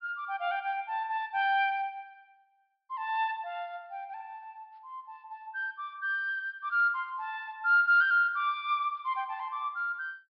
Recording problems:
treble missing; nothing above 5.5 kHz

